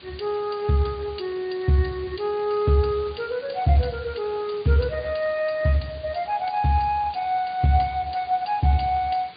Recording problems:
treble missing; nothing above 4.7 kHz
lossy codec; Speex, log-spectral distance 11 dB
hiss; SNR 21 dB

